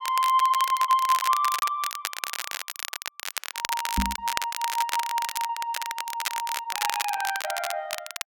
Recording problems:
crackle; vinyl, SNR 5 dB
packet loss; 16% of the sound replaced, filled with repeated pitch periods
microphone bump; at 4 s; peak +3 dB vs average level
stutter; at 6.5 s

